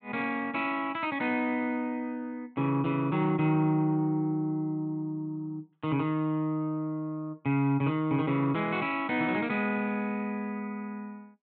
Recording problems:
treble cut off; nothing above 4 kHz

